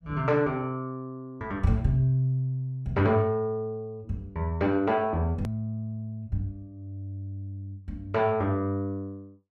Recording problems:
hard cut with a click; at 5.5 s

